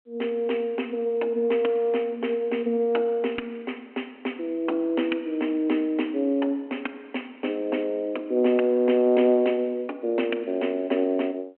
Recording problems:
phone line; 220 Hz to 3.1 kHz, G.726

